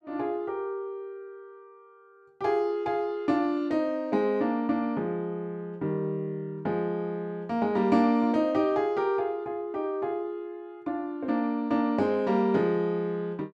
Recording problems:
none

